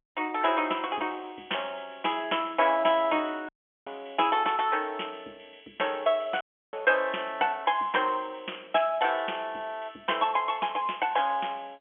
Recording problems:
phone line; 240 Hz to 3.4 kHz, G.711
dropout; at 3.5 s and at 6.5 s

